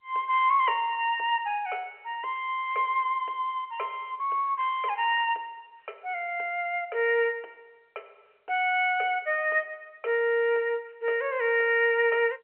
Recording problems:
telephone audio; 340 Hz to 3.1 kHz, G.711

